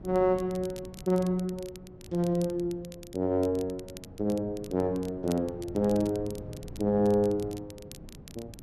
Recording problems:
wind on the microphone; below 260 Hz, SNR 18 dB
crackle; vinyl, SNR 21 dB

